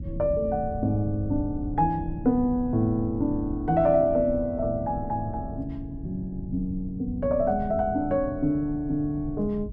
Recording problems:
low-frequency rumble; below 140 Hz, SNR 11 dB

